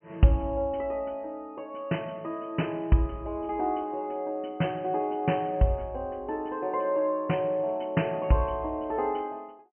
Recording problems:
treble missing; nothing above 3.1 kHz

